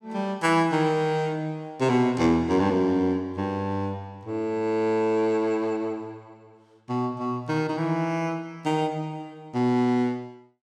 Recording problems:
none

